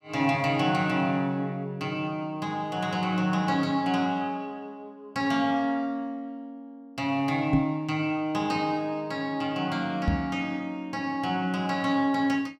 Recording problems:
microphone thump; at 7.5 s and at 10 s; peak +7 dB vs average level

